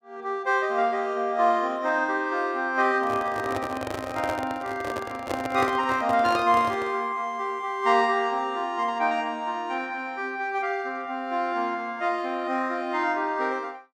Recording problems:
microphone handling noise; from 3 to 7 s; peak 0 dB vs average level

